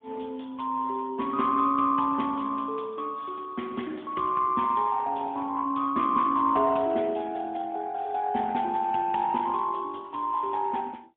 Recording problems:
phone line; 170 Hz to 3.4 kHz, AMR-NB, then MP3

